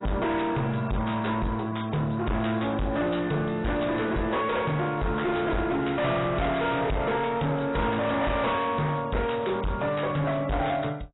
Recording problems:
lossy compression; AAC, log-spectral distance 5 dB, nothing above 3.9 kHz
distortion; hard clipping, signal-to-distortion ratio 6 dB

